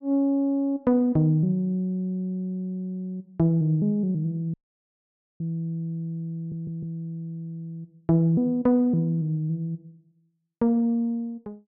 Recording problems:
audio cutting out; at 4.5 s for 1 s
audio stuttering; at 6.5 s

